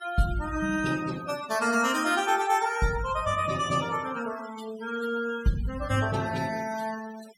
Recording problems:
noise reduction artefacts; signal-to-artefact ratio 15 dB

